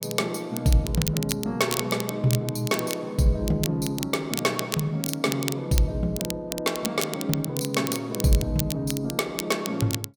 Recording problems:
crackling; vinyl, SNR 7 dB

